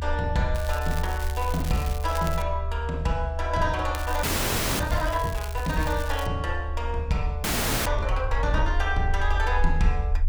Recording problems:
low-frequency rumble; below 74 Hz, SNR 2 dB
crackling; from 0.5 to 2.5 s and from 4 to 6.5 s; loose cable, SNR 12 dB
frozen audio; at 4 s for 0.5 s and at 7.5 s

